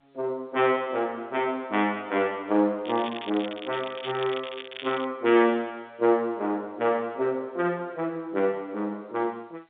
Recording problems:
telephone audio; 240 Hz to 3.7 kHz, G.711
crackle; from 3 to 5 s; loose cable, SNR 13 dB

